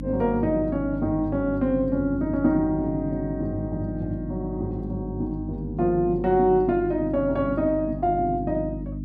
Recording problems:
hum; 50 Hz, harmonics up to 300 Hz, SNR 9 dB

